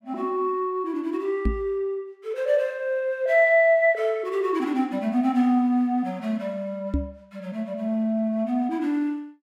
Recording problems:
microphone bump; at 1.5 s and at 7 s; peak +3 dB vs average level

